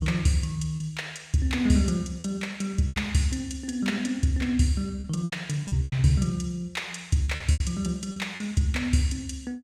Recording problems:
packet loss; 7% of the sound replaced, filled with repeated pitch periods

